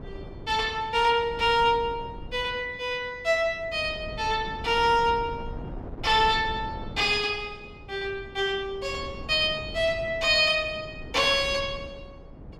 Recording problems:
wind on the microphone; below 290 Hz, SNR 16 dB

